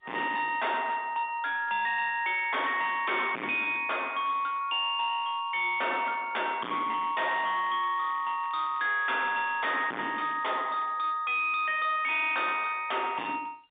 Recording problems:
telephone audio; 220 Hz to 3.7 kHz, G.711
distortion; hard clipping, uneven, signal-to-distortion ratio 5 dB
crackling; from 7 to 9 s; loose cable, SNR 27 dB

